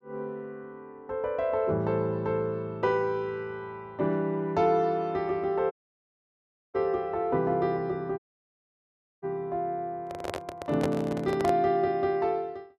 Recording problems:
dropout; at 5.5 s for 1 s and at 8 s for 1 s
handling noise; from 10 to 12 s; peak 0 dB vs average level

